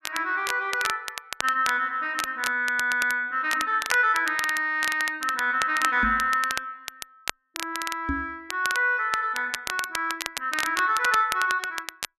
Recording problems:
crackle; vinyl, SNR 9 dB
microphone thump; at 6 s and at 8 s; peak -1 dB vs average level

